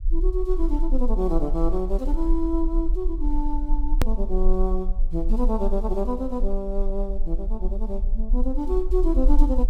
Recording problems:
rumble; below 36 Hz, strongest tone 20 Hz, SNR 0 dB
edit click; at 4 s

